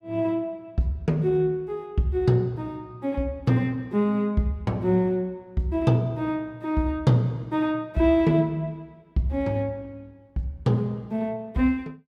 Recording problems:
none

